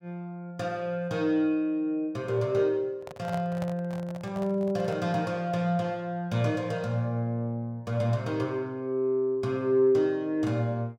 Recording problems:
microphone handling noise; from 3 to 5 s; peak -6 dB vs average level

